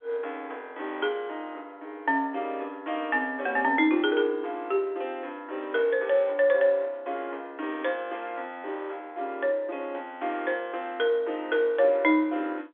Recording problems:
telephone audio; 280 Hz to 3.5 kHz, G.711

